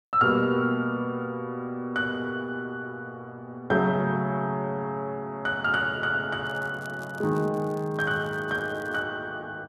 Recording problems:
crackle; from 6.5 to 9 s; loose cable, SNR 27 dB

